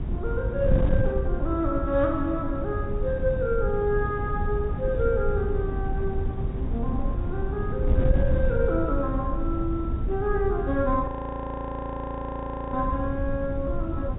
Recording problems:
treble cut off; nothing above 4 kHz
wind on the microphone; below 110 Hz, SNR 1 dB
audio freezing; at 11 s for 1.5 s

